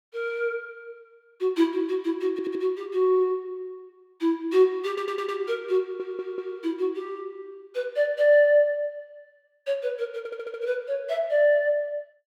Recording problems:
audio stuttering; 4 times, first at 2.5 s

